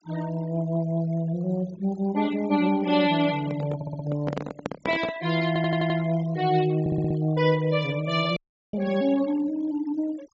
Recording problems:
treble cut off; nothing above 8 kHz
noise reduction artefacts; signal-to-artefact ratio 19 dB
handling noise; from 3.5 to 5 s; peak -1 dB vs average level
audio stuttering; at 4 s, at 5.5 s and at 7 s
audio cutting out; at 8.5 s

